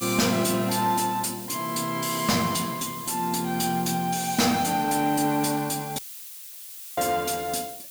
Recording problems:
distorted audio; soft clipping, signal-to-distortion ratio 12 dB
background hiss; slope +5 dB per octave, SNR 12 dB
dropout; at 6 s for 1 s

